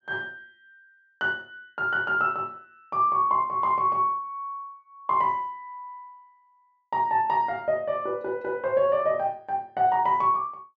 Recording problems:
low-pass filter; nothing above 8 kHz

